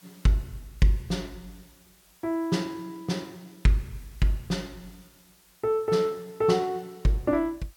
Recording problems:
hiss; slope 0 dB per octave, SNR 28 dB

